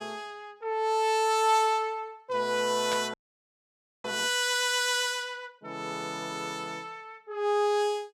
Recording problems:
static burst; at 3 s; peak -3 dB vs average level
audio freezing; at 3 s for 1 s

